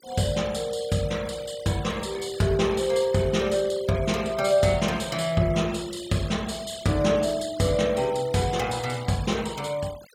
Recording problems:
noise reduction artefacts; signal-to-artefact ratio 18 dB

